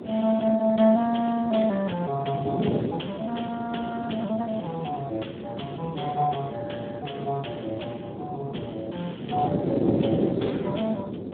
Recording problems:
phone line; 170 Hz to 3.6 kHz, Speex
wind on the microphone; below 430 Hz, SNR 4 dB

